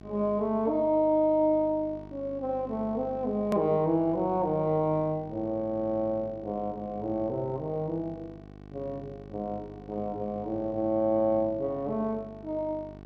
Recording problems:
electrical hum; 50 Hz, harmonics up to 1.5 kHz, SNR 18 dB
click at an edit; at 3.5 s

